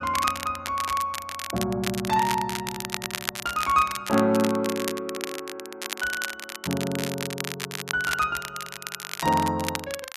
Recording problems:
crackling; vinyl, SNR 6 dB

